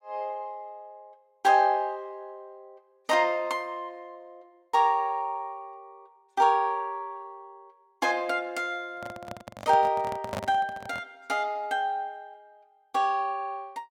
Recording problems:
handling noise; from 9 to 11 s; peak -2 dB vs average level

